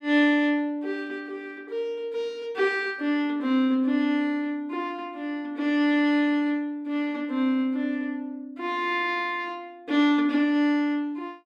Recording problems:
none

